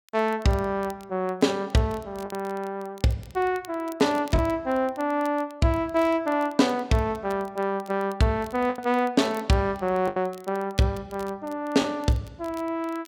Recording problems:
crackling; vinyl, SNR 26 dB
packet loss; 2% of the sound replaced, filled with the last packet

